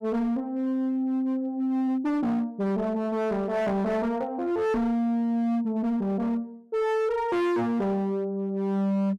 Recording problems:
distortion; hard clipping, signal-to-distortion ratio 8 dB

